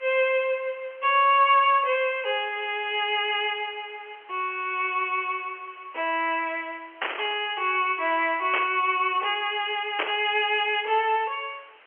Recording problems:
phone line; 280 Hz to 3.1 kHz, G.711
hiss; SNR 28 dB
burst of static; at 7 s, at 8.5 s and at 10 s; peak +2 dB vs average level

